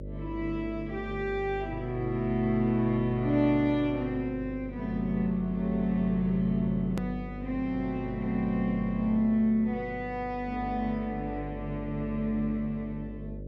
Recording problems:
hum; 50 Hz, harmonics up to 600 Hz, SNR 11 dB
hard cut with a click; at 7 s

